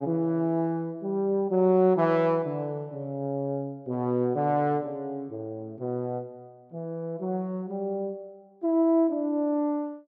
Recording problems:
none

